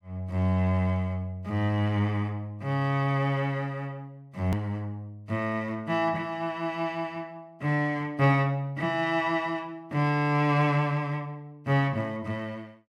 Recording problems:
hard cut with a click; at 4.5 s

